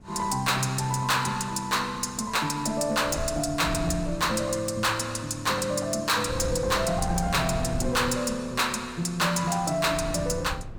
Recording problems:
distorted audio; hard clipping, signal-to-distortion ratio 11 dB
wind on the microphone; below 160 Hz, SNR 10 dB

